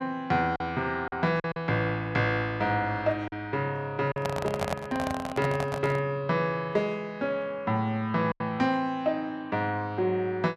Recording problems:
packet loss; 3% of the sound replaced, filled with silence
handling noise; from 4 to 6 s; peak +2 dB vs average level

